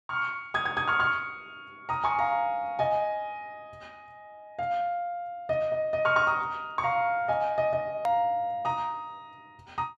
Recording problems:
hard cut with a click; at 8 s

